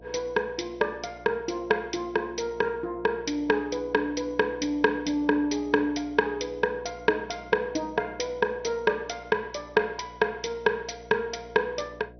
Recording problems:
lossy compression; MP2, log-spectral distance 3 dB, nothing above 6 kHz
electrical hum; 60 Hz, harmonics up to 720 Hz, SNR 22 dB

